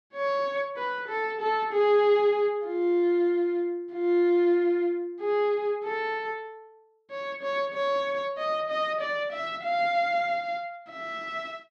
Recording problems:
none

